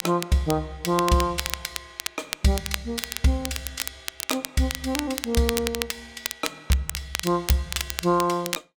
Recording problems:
crackling; vinyl, SNR 6 dB

